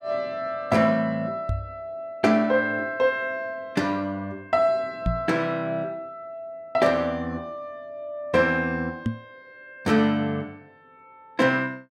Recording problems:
microphone bump; at 1.5 s, at 5 s and at 9 s; peak +3 dB vs average level

